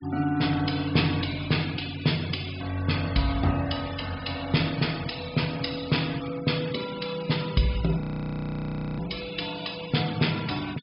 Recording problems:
treble cut off; nothing above 5.5 kHz
denoising artefacts; signal-to-artefact ratio 15 dB
frozen audio; at 8 s for 1 s

